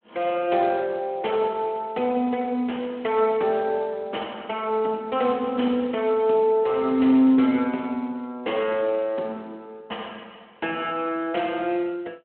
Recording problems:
phone line; 220 Hz to 3.2 kHz, Speex

